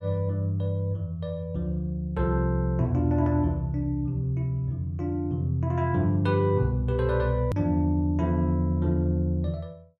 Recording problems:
hard cut with a click; at 7.5 s

